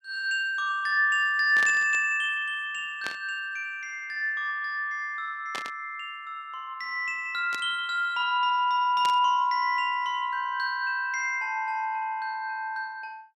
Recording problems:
static burst; 5 times, first at 1.5 s; peak -4 dB vs average level

